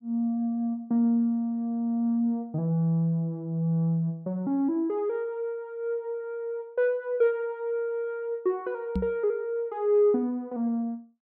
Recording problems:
knock on the microphone; at 9 s; peak +2 dB vs average level

